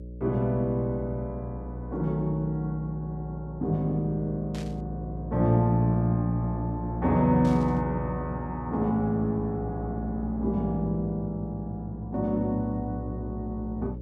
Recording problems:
electrical hum; 60 Hz, harmonics up to 600 Hz, SNR 10 dB
burst of static; at 4.5 s and at 7.5 s; peak -12 dB vs average level

